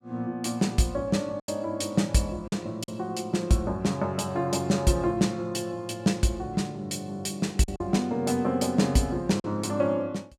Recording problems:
lost packets; 3% of the sound replaced, filled with silence

